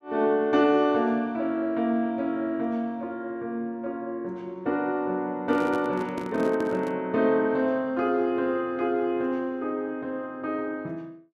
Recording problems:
microphone handling noise; from 5.5 to 7 s; peak -4 dB vs average level

